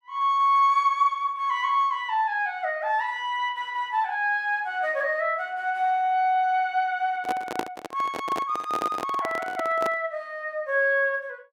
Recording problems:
handling noise; from 7 to 10 s; peak +1 dB vs average level

